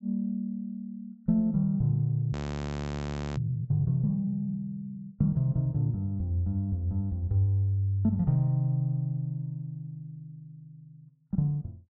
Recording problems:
treble cut off; nothing above 7.6 kHz
audio freezing; at 2.5 s for 1 s

